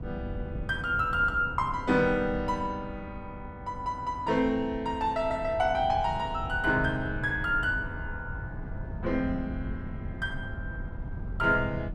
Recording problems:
wind noise; below 140 Hz, SNR 11 dB

